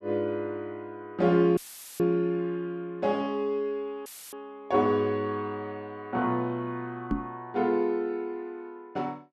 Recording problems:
audio cutting out; at 1.5 s and at 4 s; filled with static
microphone bump; at 7 s; peak +4 dB vs average level

